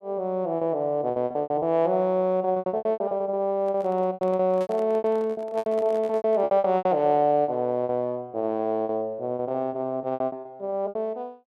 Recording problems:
packet loss; 19% of the sound replaced, filled with repeated pitch periods
handling noise; from 3.5 to 6.5 s; peak -10 dB vs average level

